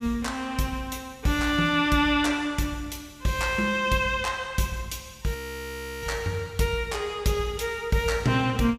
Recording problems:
audio freezing; at 5.5 s for 0.5 s

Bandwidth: 15.5 kHz